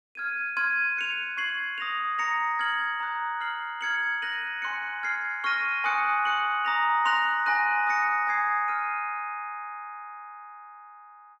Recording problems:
none

